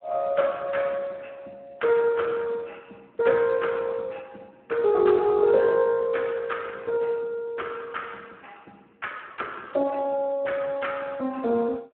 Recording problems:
telephone audio; 190 Hz to 3.7 kHz, Speex

